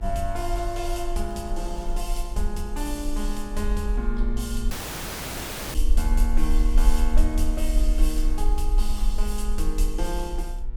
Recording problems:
electrical hum; 60 Hz, harmonics up to 2.4 kHz, SNR 17 dB
rumble; below 40 Hz, strongest tone 20 Hz, SNR -3 dB
crackling; from 1.5 to 2.5 s and from 7.5 to 9.5 s; loose cable, SNR 29 dB
dropout; at 4.5 s for 1 s

